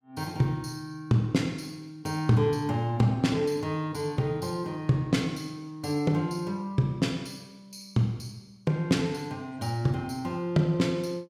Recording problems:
none

